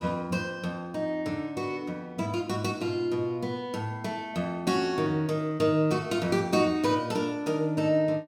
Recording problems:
none

